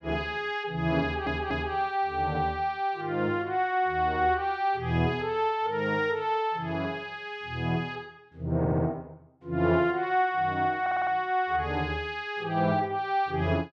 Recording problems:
audio stuttering; at 1 s, at 8.5 s and at 11 s

